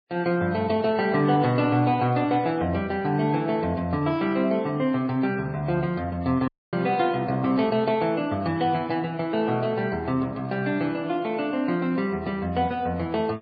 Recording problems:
lossy compression; MP3, log-spectral distance 2 dB, nothing above 4.6 kHz
audio cutting out; at 6.5 s

